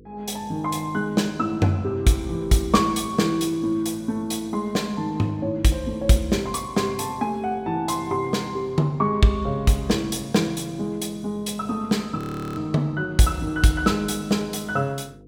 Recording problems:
electrical hum; 50 Hz, harmonics up to 500 Hz, SNR 25 dB
audio freezing; at 12 s

